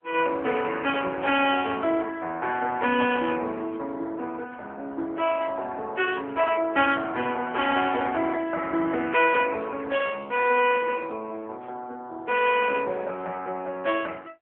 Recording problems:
phone line; 300 Hz to 3.3 kHz, AMR-NB

